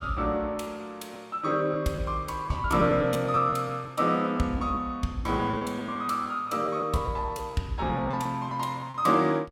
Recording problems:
lost packets; 8% of the sound replaced, filled with repeated pitch periods

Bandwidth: 17 kHz